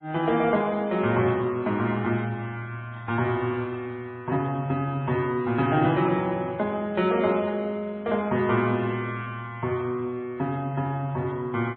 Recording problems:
treble cut off; nothing above 4 kHz
lossy codec; MP3, log-spectral distance 2 dB

